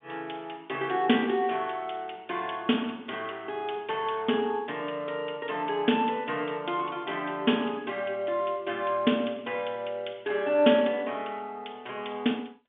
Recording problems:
phone line; 150 Hz to 3.5 kHz, G.711

